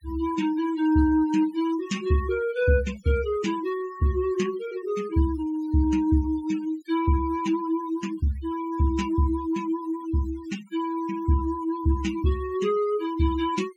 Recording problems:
denoising artefacts; signal-to-artefact ratio 18 dB

